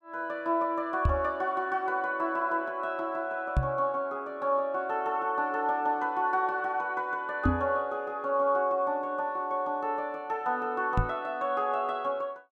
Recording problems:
knock on the microphone; 4 times, first at 1 s; peak +7 dB vs average level

